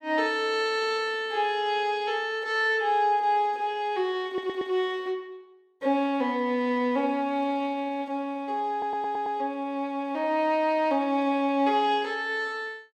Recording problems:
stutter; at 4.5 s and at 8.5 s

